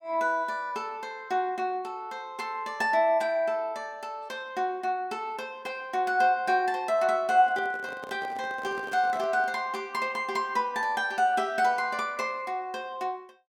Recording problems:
microphone handling noise; from 7.5 to 9.5 s; peak -10 dB vs average level

